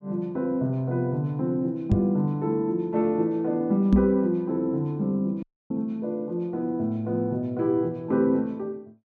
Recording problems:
microphone bump; at 2 s and at 4 s; peak +7 dB vs average level
audio cutting out; at 5.5 s

